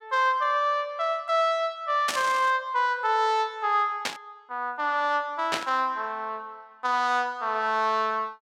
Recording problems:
static burst; at 2 s, at 4 s and at 5.5 s; peak +2 dB vs average level

